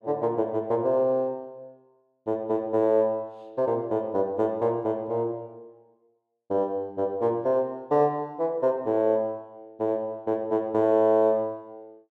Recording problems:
none

